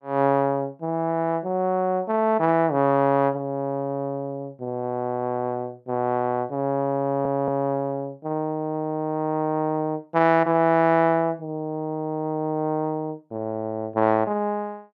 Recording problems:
audio stuttering; at 7 s

